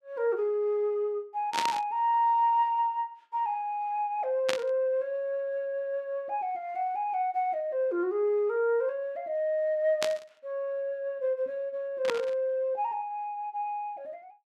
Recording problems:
static burst; 4 times, first at 1.5 s; peak +4 dB vs average level

